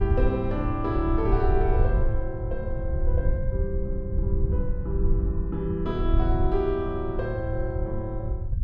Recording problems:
low-frequency rumble; below 74 Hz, SNR 0 dB

